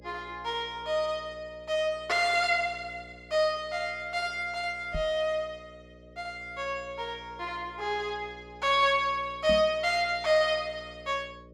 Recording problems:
electrical hum; 60 Hz, harmonics up to 600 Hz, SNR 23 dB
microphone bump; at 5 s and at 9.5 s; peak -3 dB vs average level

